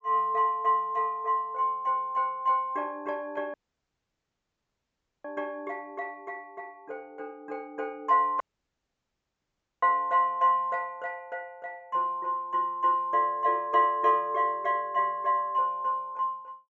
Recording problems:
treble missing; nothing above 8 kHz
dropout; at 3.5 s for 1.5 s and at 8.5 s for 1.5 s

